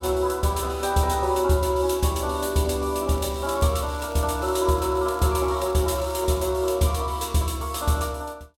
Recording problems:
crackling; from 3 to 6.5 s; loose cable, SNR 24 dB

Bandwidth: 16.5 kHz